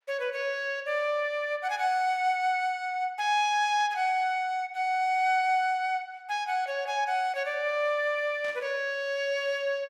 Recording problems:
burst of static; at 8.5 s; peak -15 dB vs average level

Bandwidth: 16 kHz